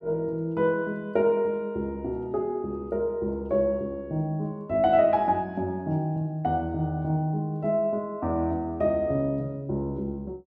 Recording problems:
none

